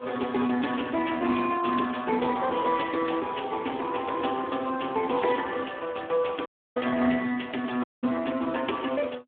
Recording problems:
phone line; 190 Hz to 3.4 kHz, Speex
audio cutting out; at 6.5 s and at 8 s

